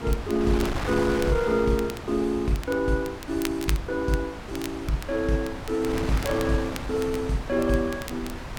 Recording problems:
wind on the microphone; below 1.1 kHz, SNR 8 dB
crackling; vinyl, SNR 16 dB

